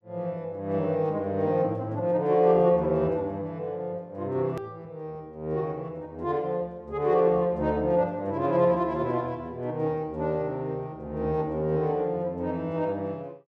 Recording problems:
click at an edit; at 4.5 s

